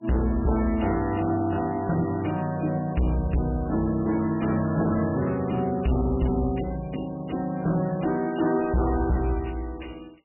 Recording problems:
lossy codec; MP3, log-spectral distance 7 dB, nothing above 2.9 kHz
distortion; hard clipping, uneven, signal-to-distortion ratio 7 dB

